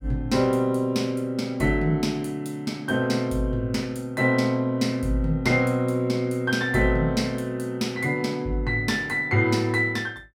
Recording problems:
none

